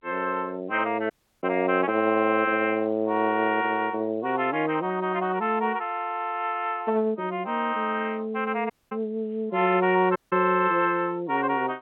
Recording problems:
telephone audio; 260 Hz to 3.5 kHz, G.711
dropout; at 1 s, at 8.5 s and at 10 s

